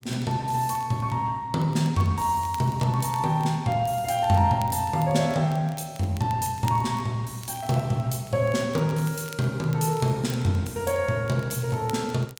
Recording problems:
crackle; vinyl, SNR 23 dB

